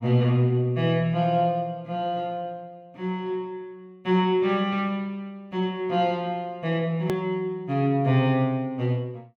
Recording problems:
edit click; at 7 s

